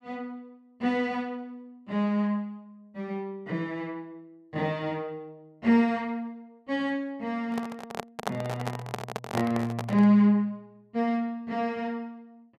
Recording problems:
microphone handling noise; from 7.5 to 10 s; peak +2 dB vs average level

